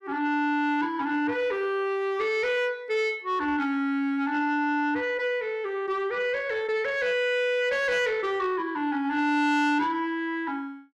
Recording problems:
distorted audio; soft clipping, signal-to-distortion ratio 11 dB

